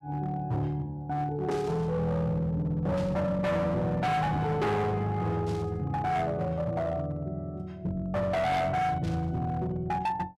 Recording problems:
distorted audio; hard clipping, signal-to-distortion ratio 8 dB
burst of static; 4 times, first at 1.5 s; peak -12 dB vs average level

